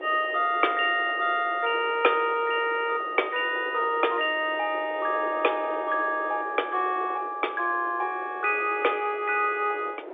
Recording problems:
phone line; 320 Hz to 3.6 kHz, G.711
wind noise; below 710 Hz, SNR 14 dB

